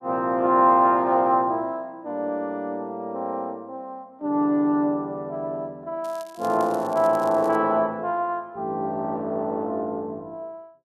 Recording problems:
crackling; from 6 to 7.5 s; loose cable, SNR 24 dB

